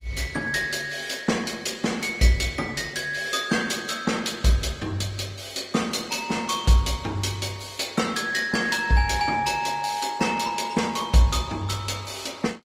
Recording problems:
lossy compression; Opus, log-spectral distance 5 dB, nothing above 18.3 kHz

